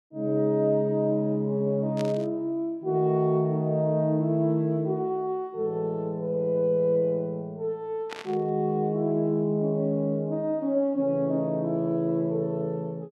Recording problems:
burst of static; at 2 s and at 8 s; peak -7 dB vs average level

